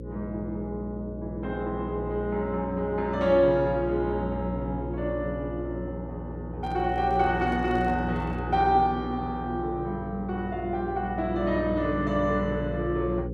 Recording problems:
electrical hum; 60 Hz, harmonics up to 540 Hz, SNR 8 dB
microphone handling noise; from 6.5 to 8.5 s; peak -12 dB vs average level

